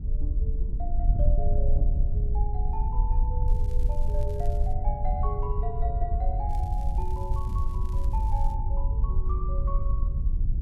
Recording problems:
wind noise; below 60 Hz, SNR -10 dB
crackle; from 3.5 to 4.5 s and from 6.5 to 8.5 s; loose cable, SNR 20 dB

